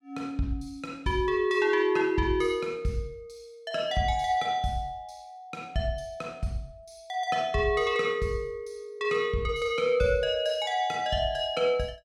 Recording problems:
none

